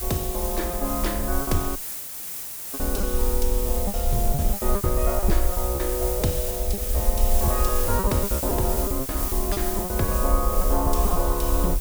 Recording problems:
hiss; slope 0 dB per octave, SNR 1 dB
low-frequency rumble; below 58 Hz, SNR 1 dB
packet loss; 12% of the sound replaced, filled with repeated pitch periods
audio cutting out; at 2 s for 1 s

